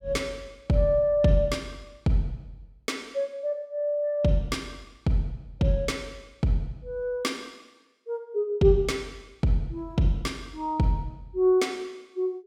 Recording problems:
none

